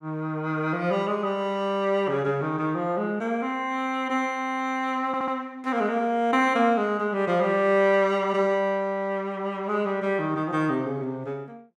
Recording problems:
audio stuttering; at 5 s

